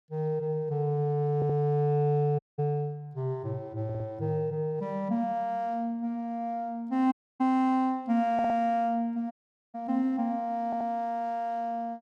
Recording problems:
stutter; 4 times, first at 1.5 s
audio cutting out; at 2.5 s, at 7 s and at 9.5 s

